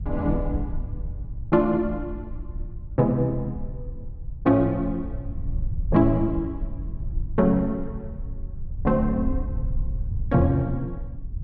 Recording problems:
low-frequency rumble; below 80 Hz, SNR 9 dB

